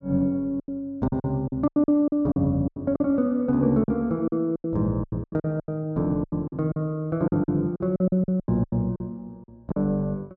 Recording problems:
lost packets; 16% of the sound replaced, filled with silence

